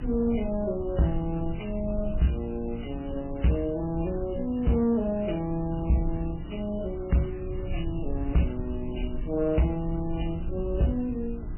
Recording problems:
lossy compression; MP3, then MP3, log-spectral distance 5 dB, nothing above 3 kHz
distortion; soft clipping, signal-to-distortion ratio 11 dB
hum; 60 Hz, harmonics up to 360 Hz, SNR 15 dB
hiss; SNR 22 dB
rumble; below 80 Hz, SNR 9 dB

